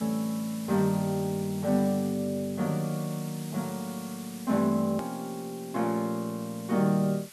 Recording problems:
hiss; slope +1 dB per octave, SNR 16 dB
edit click; at 5 s

